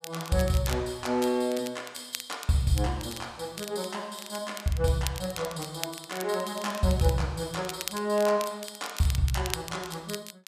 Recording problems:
crackle; vinyl, SNR 11 dB

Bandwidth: 14.5 kHz